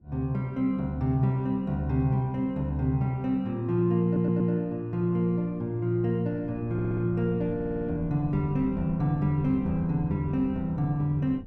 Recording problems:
wind noise; below 200 Hz, SNR 17 dB
audio stuttering; at 4 s, at 6.5 s and at 7.5 s

